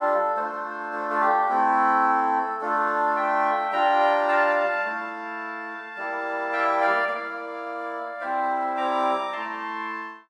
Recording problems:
none

